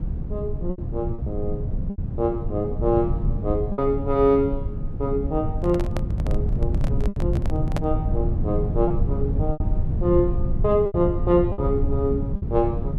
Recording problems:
rumble; below 120 Hz, SNR 2 dB
packet loss; 5% of the sound replaced, filled with repeated pitch periods
handling noise; from 5.5 to 8 s; peak -1 dB vs average level

